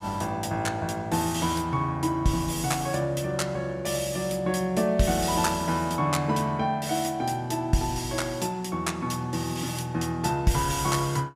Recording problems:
none

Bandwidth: 15 kHz